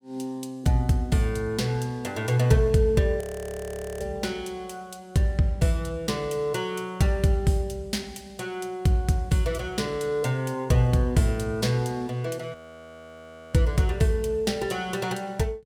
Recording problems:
audio freezing; at 3 s for 1 s and at 13 s for 1 s

